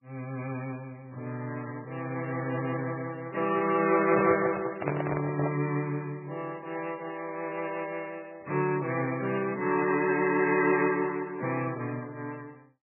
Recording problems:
codec artefacts; MP3, log-spectral distance 4 dB, nothing above 2.6 kHz
handling noise; from 4 to 5.5 s; peak +2 dB vs average level

